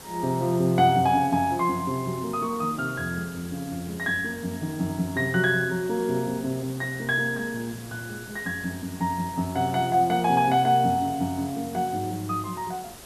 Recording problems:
hiss; slope -3 dB per octave, SNR 17 dB

